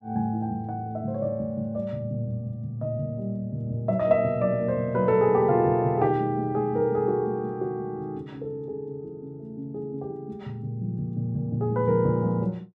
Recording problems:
none

